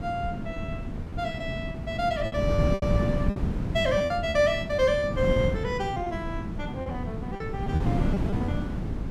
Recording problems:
wind on the microphone; below 230 Hz, SNR 2 dB
lost packets; 9% of the sound replaced, filled with repeated pitch periods

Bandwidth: 15.5 kHz